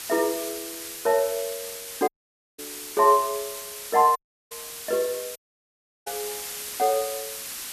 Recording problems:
background hiss; slope +2 dB per octave, SNR 9 dB
audio cutting out; at 2 s for 0.5 s, at 4 s and at 5.5 s for 0.5 s

